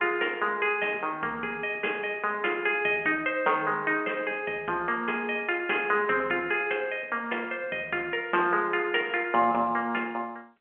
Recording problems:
phone line; 280 Hz to 3.4 kHz, G.711

